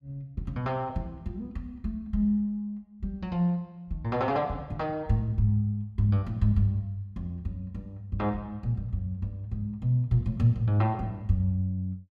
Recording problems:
none

